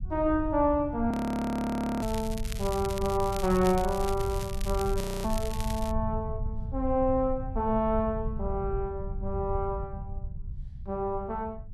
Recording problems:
low-frequency rumble; below 90 Hz, SNR 7 dB
frozen audio; at 1 s for 1 s and at 5 s
crackling; from 2 to 6 s; loose cable, SNR 12 dB

